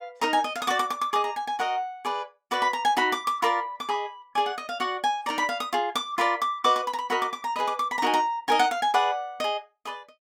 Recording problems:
none

